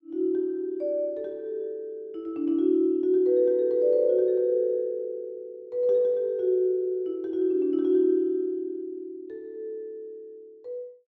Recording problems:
none

